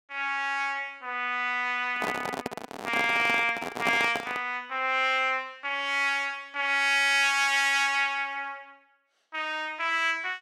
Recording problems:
handling noise; from 2 to 4.5 s; peak +1 dB vs average level

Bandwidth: 16 kHz